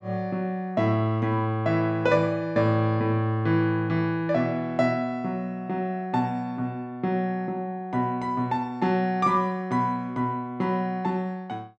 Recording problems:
none

